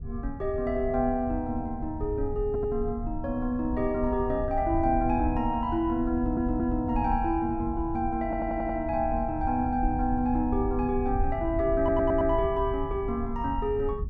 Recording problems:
rumble; below 86 Hz, SNR 8 dB
audio stuttering; 4 times, first at 2.5 s

